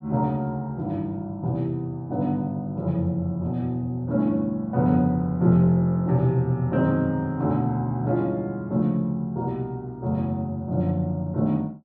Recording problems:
none

